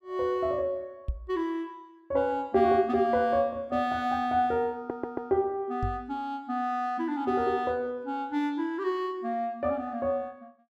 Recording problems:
microphone thump; at 1 s and at 6 s; peak +1 dB vs average level
audio stuttering; at 5 s

